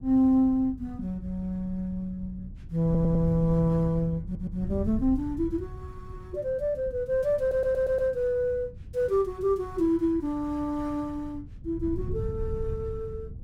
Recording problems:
wind on the microphone; below 120 Hz, SNR 12 dB
stutter; at 3 s, at 4 s and at 7.5 s

